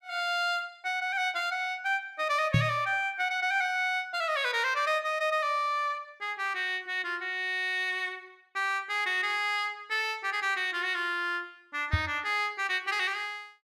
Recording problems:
knock on the microphone; at 2.5 s and at 12 s; peak +7 dB vs average level

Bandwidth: 14.5 kHz